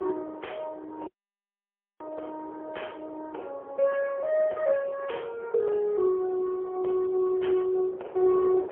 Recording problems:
phone line; 320 Hz to 3.3 kHz, AMR-NB, then MP3
wind noise; below 650 Hz, SNR 16 dB
dropout; at 1 s for 1 s

